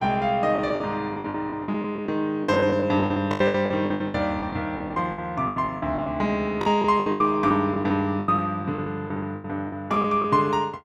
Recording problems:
packet loss; 17% of the sound replaced, filled with the last packet

